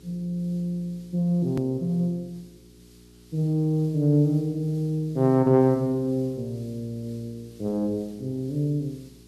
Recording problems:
hum; 60 Hz, harmonics up to 420 Hz, SNR 26 dB
hiss; SNR 30 dB
edit click; at 1.5 s

